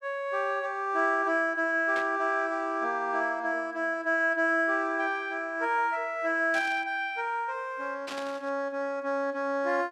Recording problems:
static burst; at 2 s, at 6.5 s and at 8 s; peak -7 dB vs average level

